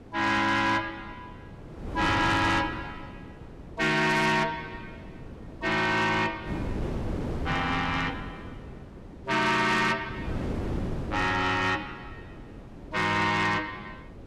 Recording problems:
distorted audio; soft clipping, signal-to-distortion ratio 12 dB
wind noise; below 380 Hz, SNR 12 dB

